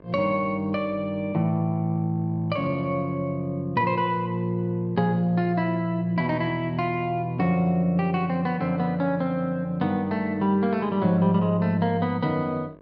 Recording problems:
hum; 50 Hz, harmonics up to 2.3 kHz, SNR 28 dB

